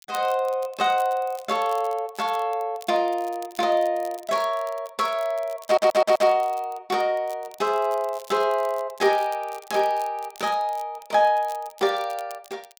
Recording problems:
crackling; vinyl, SNR 23 dB
audio stuttering; at 5.5 s

